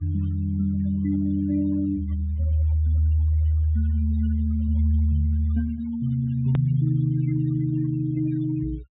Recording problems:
treble missing; nothing above 4 kHz
denoising artefacts; signal-to-artefact ratio 22 dB
edit click; at 6.5 s

